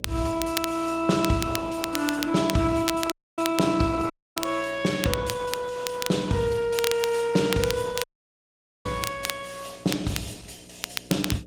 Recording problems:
codec artefacts; Opus, log-spectral distance 4 dB, nothing above 18.9 kHz
electrical hum; 60 Hz, harmonics up to 600 Hz, SNR 22 dB
crackling; vinyl, SNR 7 dB
audio cutting out; at 3 s, at 4 s and at 8 s for 1 s

